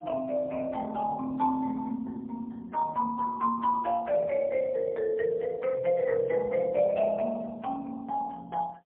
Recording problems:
phone line; 220 Hz to 3.6 kHz, AMR-NB, then MP3

